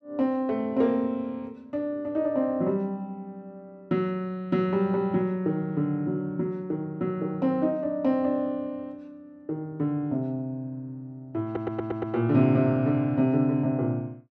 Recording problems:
audio stuttering; at 11 s

